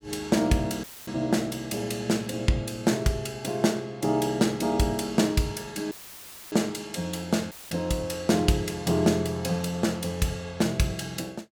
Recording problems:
dropout; at 1 s, at 6 s for 0.5 s and at 7.5 s; filled with static

